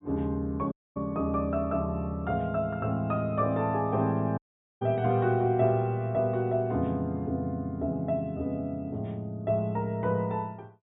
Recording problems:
treble cut off; nothing above 4 kHz
dropout; at 0.5 s and at 4.5 s

